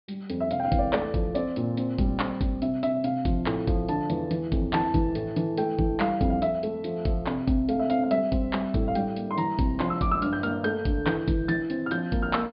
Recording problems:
treble cut off; nothing above 4.9 kHz

